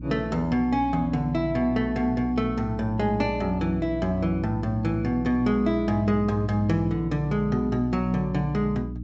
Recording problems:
low-pass filter; nothing above 8 kHz
electrical hum; 60 Hz, harmonics up to 300 Hz, SNR 10 dB

